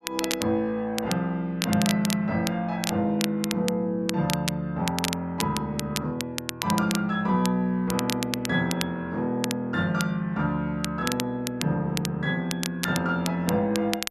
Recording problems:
crackle; vinyl, SNR 7 dB

